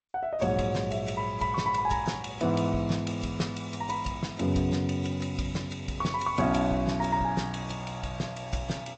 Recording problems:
codec artefacts; AAC, then G.722, log-spectral distance 4 dB, nothing above 7.6 kHz

